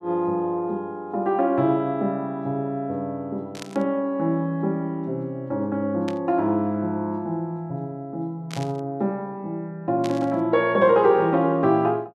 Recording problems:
burst of static; 4 times, first at 3.5 s; peak -7 dB vs average level

